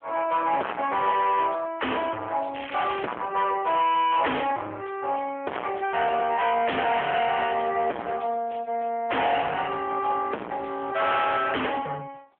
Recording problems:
phone line; 340 Hz to 3.3 kHz, AMR-NB
distorted audio; soft clipping, signal-to-distortion ratio 5 dB
crackling; at 2.5 s; loose cable, SNR 12 dB

